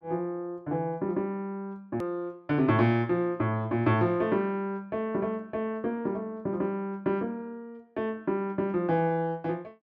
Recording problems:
hard cut with a click; at 2 s

